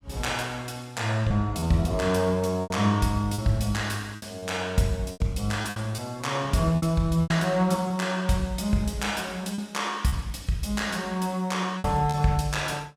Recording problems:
packet loss; 6% of the sound replaced, filled with repeated pitch periods

